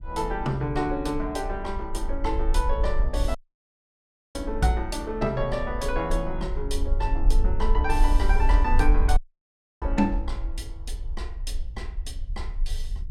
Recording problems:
low-frequency rumble; below 46 Hz, SNR 1 dB
audio cutting out; at 3.5 s for 1 s and at 9 s for 0.5 s

